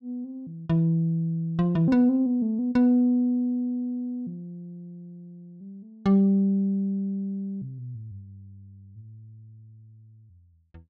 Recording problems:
none

